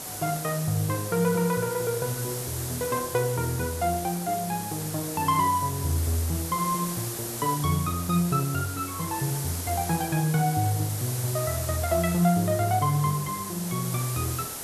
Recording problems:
hiss; SNR 6 dB

